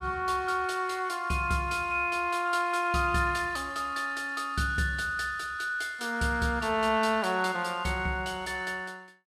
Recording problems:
none

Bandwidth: 15 kHz